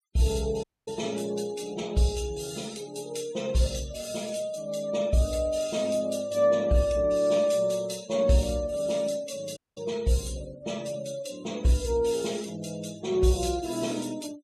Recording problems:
denoising artefacts; signal-to-artefact ratio 19 dB
dropout; at 0.5 s and at 9.5 s

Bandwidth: 14 kHz